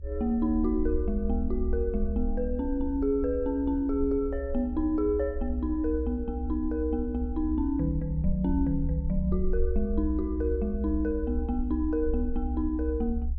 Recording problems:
rumble; below 66 Hz, SNR 5 dB

